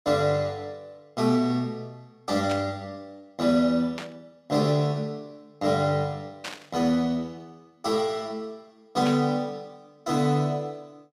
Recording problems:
burst of static; 4 times, first at 2.5 s; peak -5 dB vs average level

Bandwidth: 15.5 kHz